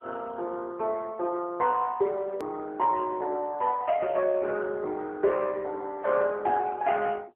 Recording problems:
phone line; 280 Hz to 2.8 kHz, AMR-NB
hard cut with a click; at 2.5 s

